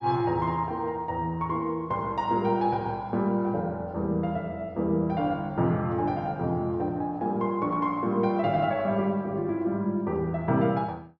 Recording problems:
none

